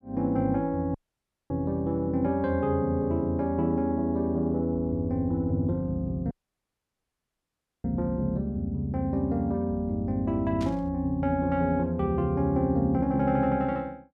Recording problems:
dropout; at 1 s for 0.5 s and at 6.5 s for 1.5 s
burst of static; at 11 s; peak -11 dB vs average level

